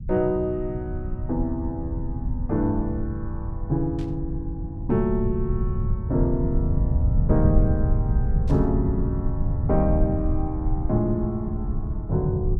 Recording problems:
rumble; below 110 Hz, SNR 0 dB
static burst; at 4 s and at 8.5 s; peak -16 dB vs average level

